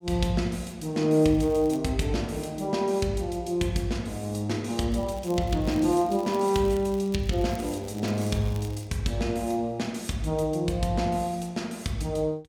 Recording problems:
crackling; at 1.5 s and from 5 to 9 s; loose cable, SNR 22 dB

